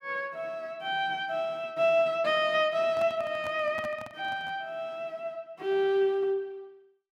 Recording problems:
handling noise; from 3 to 4.5 s; peak -9 dB vs average level

